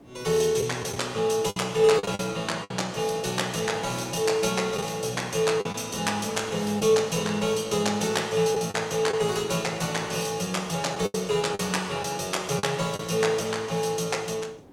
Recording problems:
background hiss; SNR 23 dB
lost packets; 4% of the sound replaced, filled with the last packet

